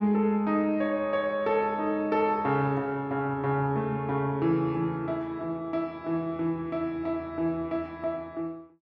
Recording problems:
none

